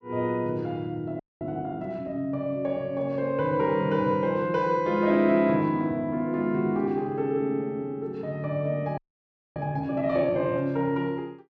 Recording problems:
frozen audio; at 1 s and at 9 s for 0.5 s

